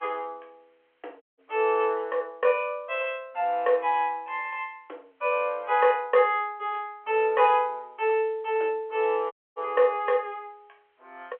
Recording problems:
telephone audio; 340 Hz to 3.3 kHz, G.711
background hiss; SNR 43 dB
dropout; at 1 s and at 9.5 s

